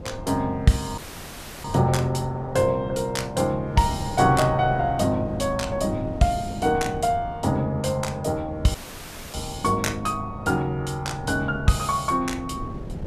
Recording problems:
wind noise; below 260 Hz, SNR 13 dB
audio cutting out; at 1 s for 0.5 s and at 8.5 s for 0.5 s

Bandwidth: 14.5 kHz